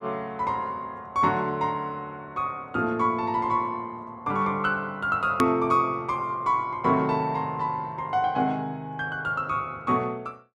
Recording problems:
edit click; at 5.5 s

